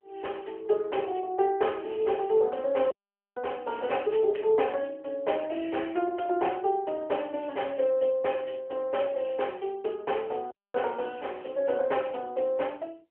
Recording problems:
phone line; 320 Hz to 3.2 kHz, AMR-NB
audio cutting out; at 3 s and at 11 s

